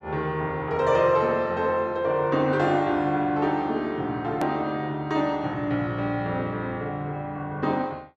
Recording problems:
click at an edit; at 4.5 s

